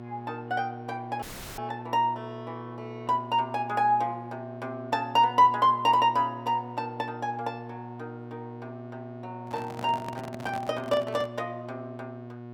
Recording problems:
electrical hum; 60 Hz, harmonics up to 1.4 kHz, SNR 14 dB
dropout; at 1 s
handling noise; from 9.5 to 11 s; peak -6 dB vs average level

